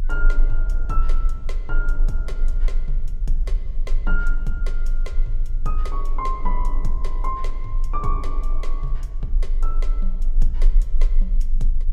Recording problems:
low-frequency rumble; below 30 Hz, strongest tone 22 Hz, SNR -8 dB
wind noise; below 68 Hz, SNR 5 dB

